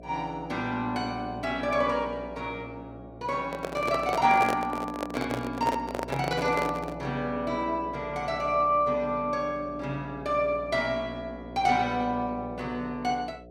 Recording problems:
hum; 60 Hz, harmonics up to 720 Hz, SNR 15 dB
microphone handling noise; from 3.5 to 7 s; peak +3 dB vs average level

